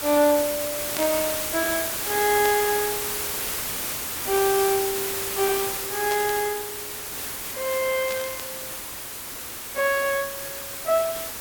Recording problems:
background hiss; slope -1 dB per octave, SNR 3 dB
burst of static; 4 times, first at 1 s; peak -3 dB vs average level

